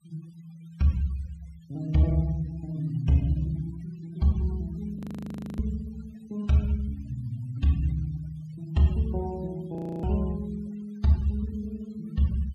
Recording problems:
denoising artefacts; signal-to-artefact ratio 24 dB
frozen audio; at 5 s for 0.5 s and at 10 s

